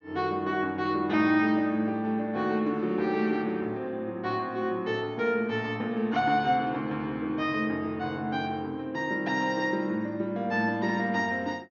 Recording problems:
treble missing; nothing above 6.7 kHz

